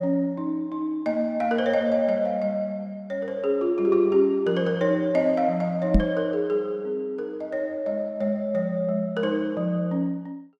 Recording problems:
knock on the microphone; at 6 s; peak +8 dB vs average level

